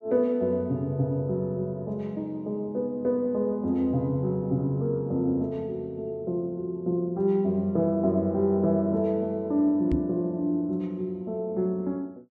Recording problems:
knock on the microphone; at 10 s; peak +3 dB vs average level

